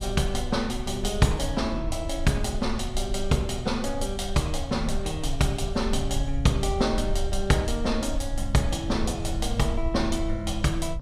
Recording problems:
rumble; below 62 Hz, strongest tone 20 Hz, SNR 7 dB

